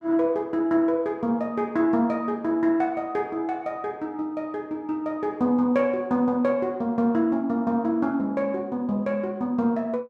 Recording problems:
none

